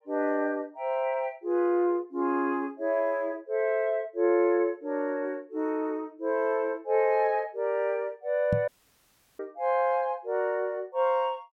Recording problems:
knock on the microphone; at 8.5 s; peak +3 dB vs average level
audio cutting out; at 8.5 s for 0.5 s

